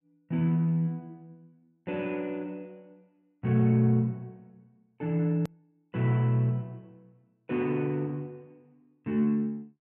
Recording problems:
click at an edit; at 5.5 s

